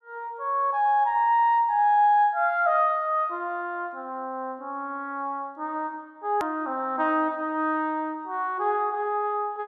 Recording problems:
click at an edit; at 6.5 s

